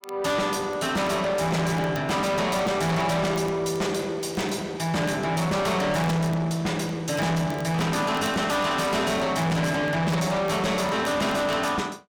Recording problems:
distorted audio; soft clipping, signal-to-distortion ratio 7 dB
crackling; vinyl, SNR 27 dB

